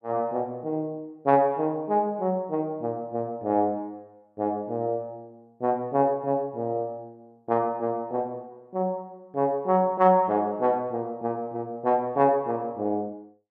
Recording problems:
none

